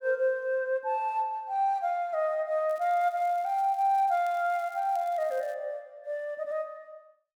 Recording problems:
crackle; from 2.5 to 5.5 s; loose cable, SNR 27 dB

